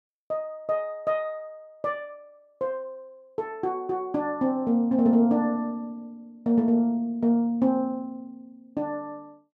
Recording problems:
none

